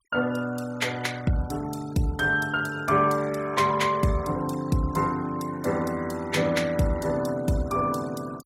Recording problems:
noise reduction artefacts; signal-to-artefact ratio 19 dB

